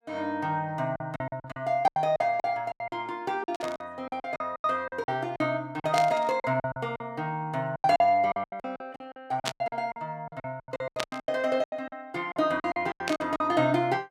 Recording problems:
packet loss; 18% of the sound replaced, filled with silence
static burst; 5 times, first at 3.5 s; peak +4 dB vs average level

